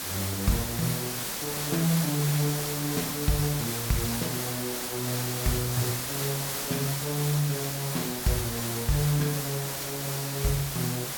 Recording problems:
background hiss; slope -1 dB per octave, SNR 1 dB

